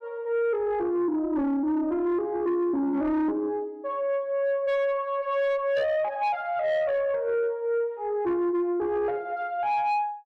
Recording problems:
distortion; soft clipping, signal-to-distortion ratio 11 dB

